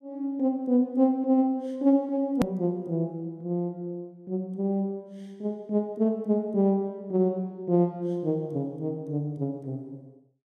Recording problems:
hard cut with a click; at 2.5 s

